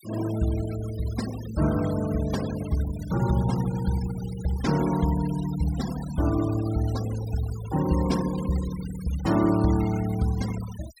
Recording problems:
denoising artefacts; signal-to-artefact ratio 15 dB

